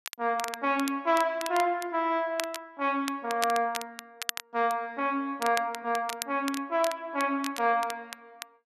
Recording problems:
crackling; vinyl, SNR 10 dB

